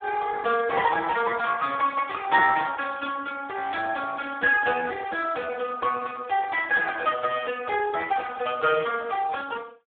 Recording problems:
phone line; 280 Hz to 3.1 kHz, Speex

